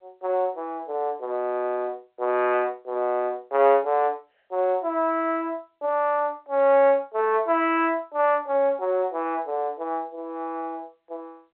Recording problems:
phone line; 340 Hz to 3.3 kHz, G.711

